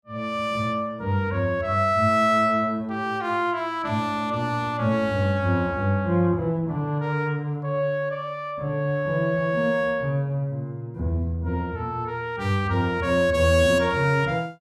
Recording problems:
none

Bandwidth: 16 kHz